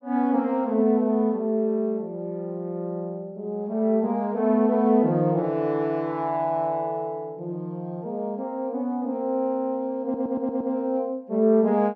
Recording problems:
audio stuttering; at 10 s

